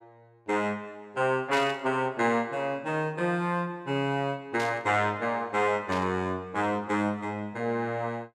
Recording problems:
static burst; at 1.5 s, at 4.5 s and at 6 s; peak -4 dB vs average level

